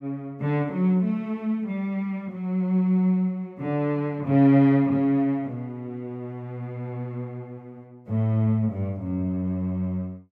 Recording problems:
none

